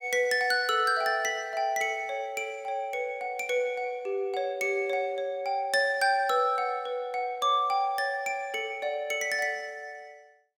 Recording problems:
none

